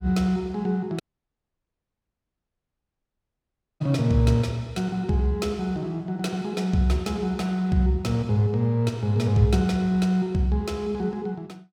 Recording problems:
dropout; at 1 s for 3 s

